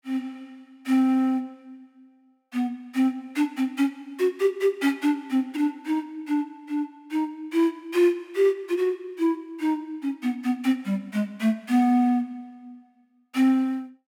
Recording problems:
none

